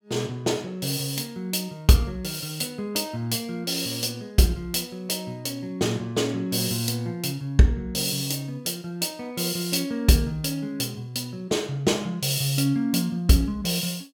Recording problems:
none

